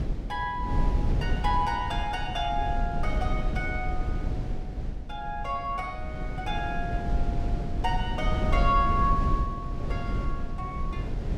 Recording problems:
low-frequency rumble; below 110 Hz, SNR 0 dB

